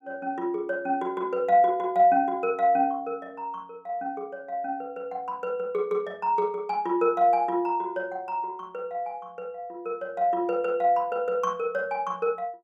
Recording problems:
none

